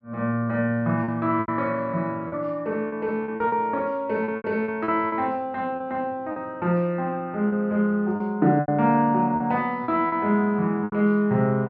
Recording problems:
packet loss; 9% of the sound replaced, filled with repeated pitch periods

